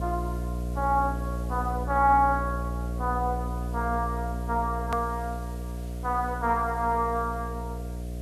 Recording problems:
hum; 60 Hz, harmonics up to 720 Hz, SNR 5 dB
hiss; slope +1 dB per octave, SNR 24 dB
hard cut with a click; at 5 s

